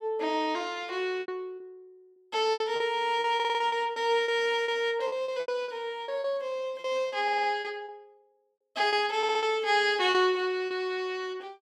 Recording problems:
packet loss; 11% of the sound replaced, filled with repeated pitch periods
stutter; at 3.5 s, at 7 s and at 9 s

